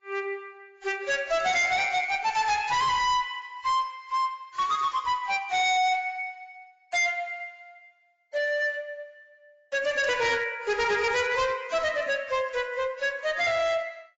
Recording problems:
codec artefacts; AAC, log-spectral distance 3 dB, nothing above 7.3 kHz
distorted audio; hard clipping, signal-to-distortion ratio 6 dB

